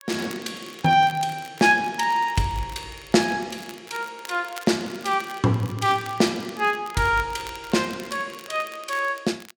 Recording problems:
crackling; vinyl, SNR 20 dB

